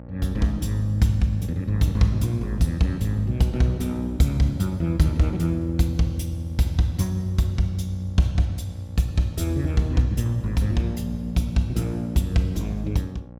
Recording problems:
electrical hum; 60 Hz, harmonics up to 1.1 kHz, SNR 18 dB

